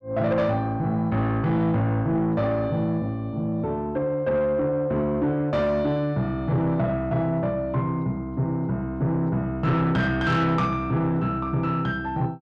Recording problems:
distortion; soft clipping, signal-to-distortion ratio 11 dB

